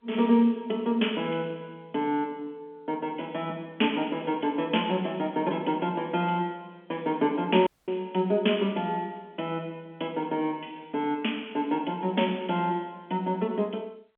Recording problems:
telephone audio; 190 Hz to 3.4 kHz, G.711
audio cutting out; at 7.5 s

